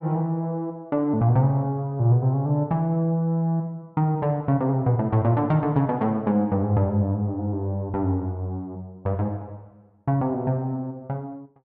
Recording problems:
none

